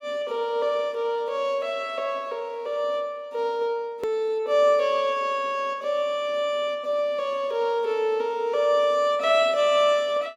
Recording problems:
hard cut with a click; at 4 s

